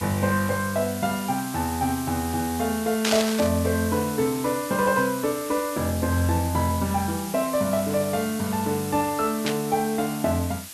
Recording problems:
hiss; slope +1 dB per octave, SNR 11 dB
static burst; at 3 s and at 9.5 s; peak +4 dB vs average level

